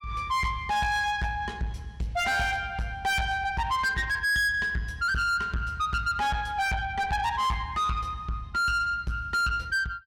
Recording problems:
distortion; soft clipping, signal-to-distortion ratio 8 dB

